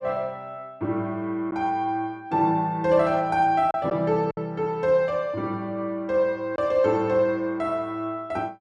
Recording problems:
lost packets; 1.5% of the sound replaced, filled with silence

